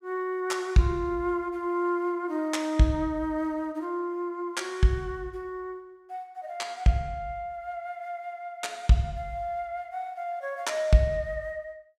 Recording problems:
none

